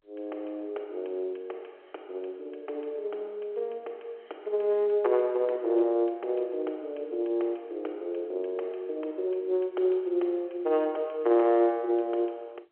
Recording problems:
telephone audio; 300 Hz to 3.7 kHz, G.711

